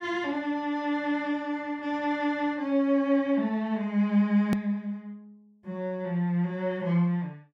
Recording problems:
hard cut with a click; at 4.5 s

